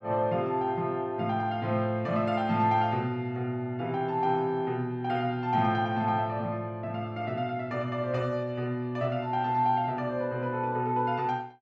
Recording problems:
none

